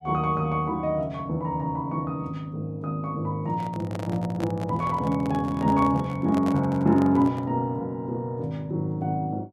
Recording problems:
handling noise; from 3.5 to 7.5 s; peak -4 dB vs average level

